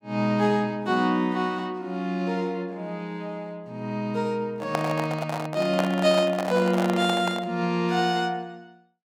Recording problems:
handling noise; from 4.5 to 7.5 s; peak +3 dB vs average level

